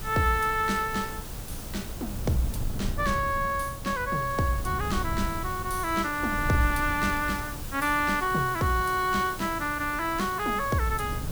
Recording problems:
hiss; SNR 13 dB
wind noise; below 130 Hz, SNR 10 dB

